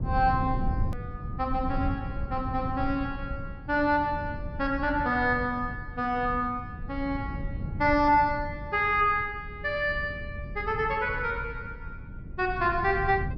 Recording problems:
treble cut off; nothing above 5.5 kHz
rumble; below 130 Hz, SNR 9 dB
hard cut with a click; at 1 s

